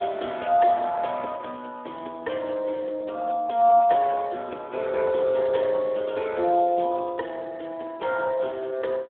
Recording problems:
phone line; 260 Hz to 2.9 kHz, Speex

